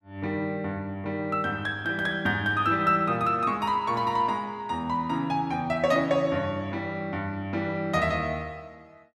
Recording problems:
none

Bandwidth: 15 kHz